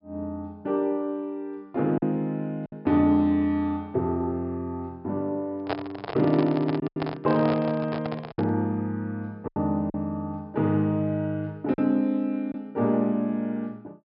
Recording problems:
treble cut off; nothing above 5.5 kHz
packet loss; 3% of the sound replaced, filled with silence
microphone handling noise; from 5.5 to 8.5 s; peak +1 dB vs average level

